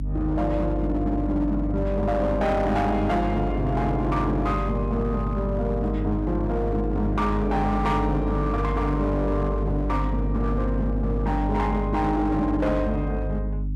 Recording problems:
distortion; hard clipping, signal-to-distortion ratio 12 dB
electrical hum; 50 Hz, harmonics up to 300 Hz, SNR 3 dB

